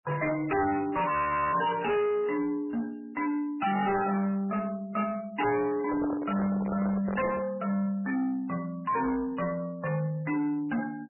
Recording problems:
codec artefacts; MP3, log-spectral distance 3 dB, nothing above 2.9 kHz
distorted audio; soft clipping, signal-to-distortion ratio 6 dB
frozen audio; at 1 s
microphone handling noise; from 6 to 7.5 s; peak -1 dB vs average level

